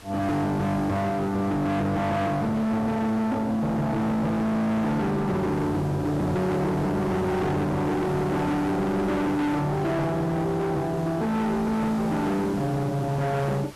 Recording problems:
distortion; hard clipping, signal-to-distortion ratio 6 dB
background hiss; slope -3 dB per octave, SNR 21 dB

